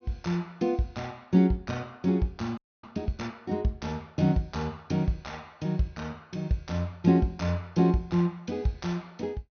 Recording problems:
low-pass filter; nothing above 6.3 kHz
audio freezing; at 2.5 s

